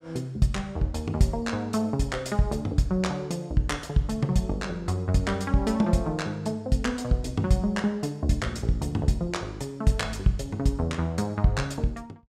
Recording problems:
none

